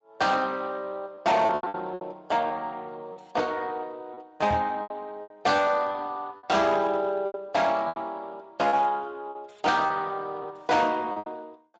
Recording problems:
codec artefacts; Speex, log-spectral distance 3 dB, nothing above 7.3 kHz
distortion; hard clipping, signal-to-distortion ratio 11 dB
lost packets; 9% of the sound replaced, filled with repeated pitch periods
microphone bump; at 4.5 s; peak -3 dB vs average level

